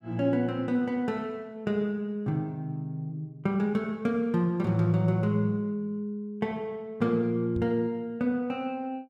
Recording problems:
microphone thump; at 7.5 s; peak -1 dB vs average level

